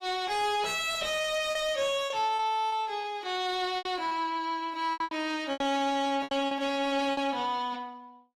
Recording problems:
lossy codec; AAC, log-spectral distance 2 dB, nothing above 15.1 kHz
distortion; soft clipping, signal-to-distortion ratio 9 dB
lost packets; 9% of the sound replaced, filled with repeated pitch periods

